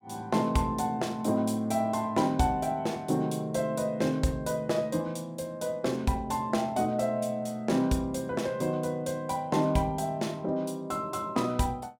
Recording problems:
none

